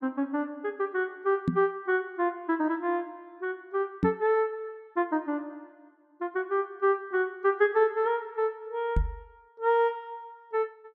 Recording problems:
knock on the microphone; at 1.5 s, at 4 s and at 9 s; peak +7 dB vs average level

